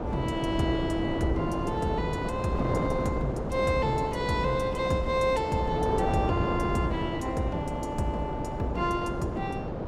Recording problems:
wind noise; below 580 Hz, SNR 3 dB

